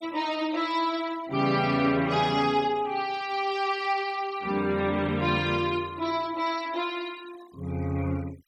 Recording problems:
noise reduction artefacts; signal-to-artefact ratio 22 dB

